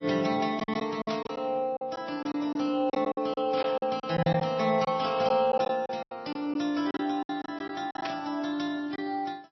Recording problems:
codec artefacts; MP3, then MP3, log-spectral distance 2 dB, nothing above 5.8 kHz
packet loss; 11% of the sound replaced, filled with silence
burst of static; at 1 s, at 3.5 s and at 8 s; peak -2 dB vs average level

